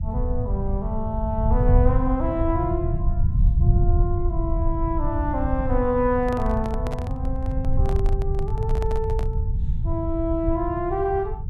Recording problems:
low-frequency rumble; below 92 Hz, SNR -1 dB
microphone handling noise; from 6 to 9.5 s; peak -4 dB vs average level

